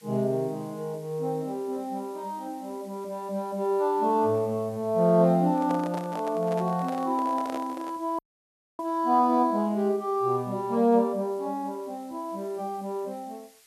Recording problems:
hiss; SNR 28 dB
handling noise; from 5.5 to 8 s; peak -6 dB vs average level
dropout; at 8 s for 0.5 s

